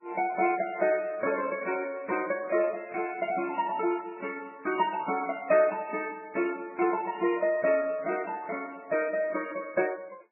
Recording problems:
lossy codec; MP3, then Vorbis, log-spectral distance 4 dB, nothing above 2.3 kHz

